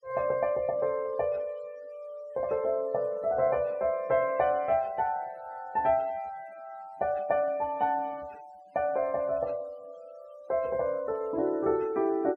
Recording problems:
noise reduction artefacts; signal-to-artefact ratio 27 dB

